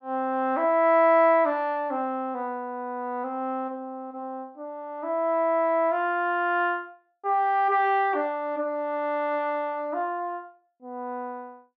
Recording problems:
none

